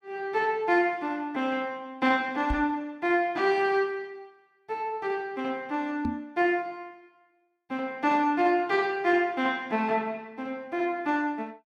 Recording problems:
knock on the microphone; at 2.5 s and at 6 s; peak 0 dB vs average level

